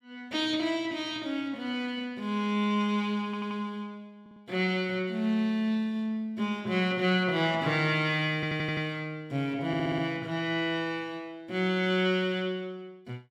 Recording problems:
audio stuttering; 4 times, first at 3.5 s

